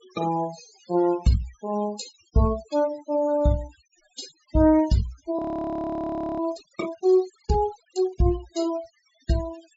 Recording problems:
treble cut off; nothing above 8 kHz
denoising artefacts; signal-to-artefact ratio 18 dB
frozen audio; at 5.5 s for 1 s

